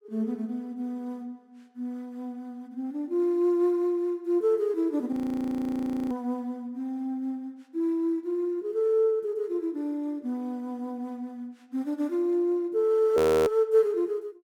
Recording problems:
frozen audio; at 5 s for 1 s and at 13 s

